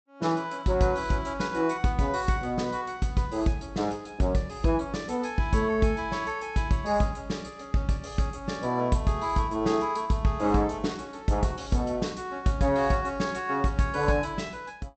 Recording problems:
treble missing; nothing above 8 kHz

